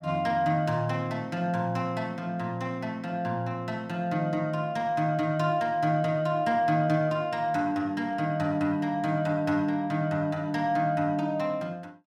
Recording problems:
none

